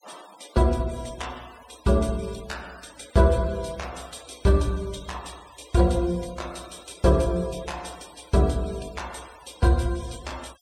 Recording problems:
denoising artefacts; signal-to-artefact ratio 23 dB

